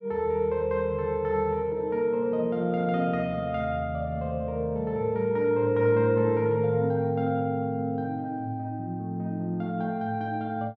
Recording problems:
none

